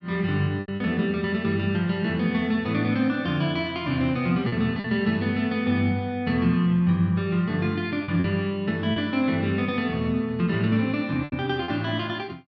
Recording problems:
lost packets; 4% of the sound replaced, filled with repeated pitch periods

